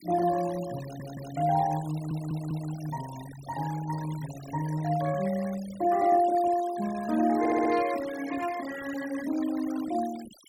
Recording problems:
denoising artefacts; signal-to-artefact ratio 16 dB
audio stuttering; at 1 s, at 2 s and at 7.5 s

